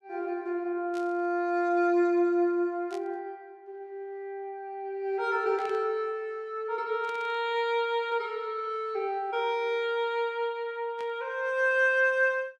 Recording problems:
burst of static; 5 times, first at 1 s; peak -14 dB vs average level

